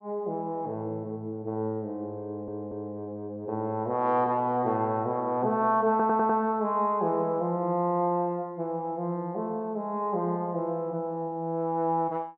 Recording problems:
stutter; at 2.5 s and at 6 s

